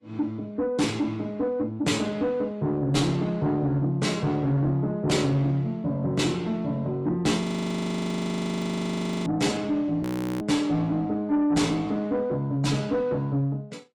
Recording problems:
codec artefacts; AAC, log-spectral distance 2 dB
distorted audio; soft clipping, signal-to-distortion ratio 11 dB
frozen audio; at 7.5 s for 2 s and at 10 s

